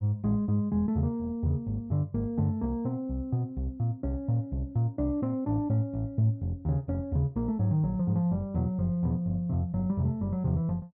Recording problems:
none

